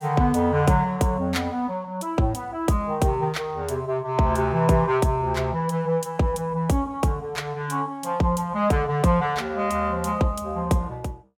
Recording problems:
none

